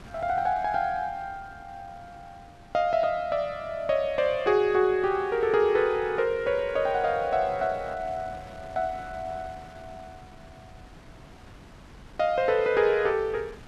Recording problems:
wind on the microphone; below 1 kHz, SNR 22 dB

